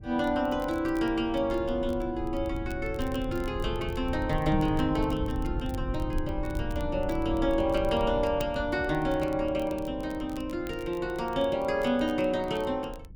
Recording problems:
rumble; below 110 Hz, SNR 10 dB
crackling; vinyl, SNR 25 dB
microphone bump; at 4.5 s; peak +3 dB vs average level

